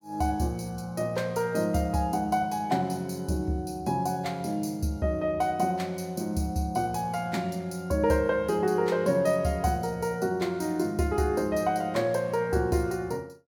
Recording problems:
none

